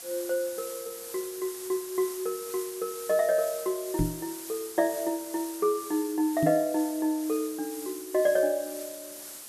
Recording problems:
background hiss; slope 0 dB per octave, SNR 11 dB
microphone thump; at 4 s and at 6.5 s; peak +6 dB vs average level

